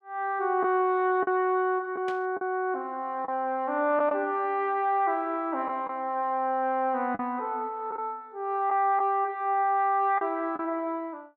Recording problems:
packet loss; 3% of the sound replaced, filled with the last packet
burst of static; at 2 s; peak -10 dB vs average level

